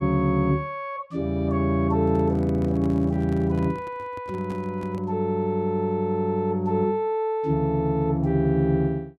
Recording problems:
handling noise; from 2 to 5 s; peak -10 dB vs average level

